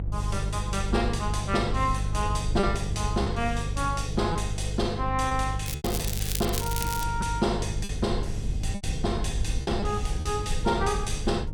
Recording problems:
hum; 50 Hz, harmonics up to 350 Hz, SNR 4 dB
low-frequency rumble; below 94 Hz, SNR 6 dB
packet loss; 4% of the sound replaced, filled with repeated pitch periods
crackling; from 5.5 to 7 s; loose cable, SNR 4 dB

